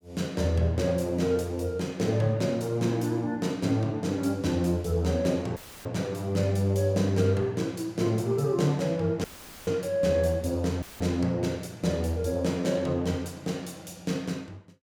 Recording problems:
dropout; at 5.5 s, at 9 s and at 11 s; filled with static

